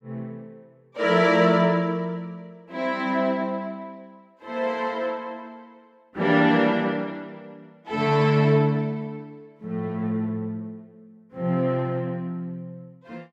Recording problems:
none

